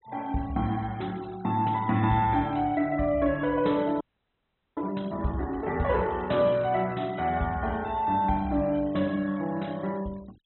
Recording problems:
treble cut off; nothing above 4 kHz
denoising artefacts; signal-to-artefact ratio 25 dB
audio freezing; at 4 s for 1 s

